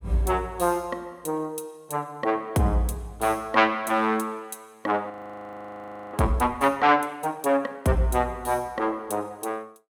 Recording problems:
audio freezing; at 5 s for 1 s

